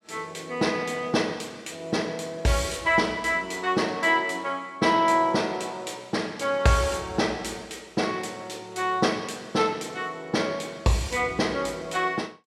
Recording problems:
none

